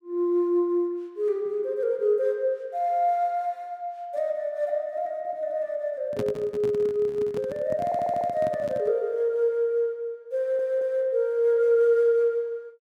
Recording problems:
microphone handling noise; from 6 to 9 s; peak -2 dB vs average level
stutter; at 8 s and at 10 s

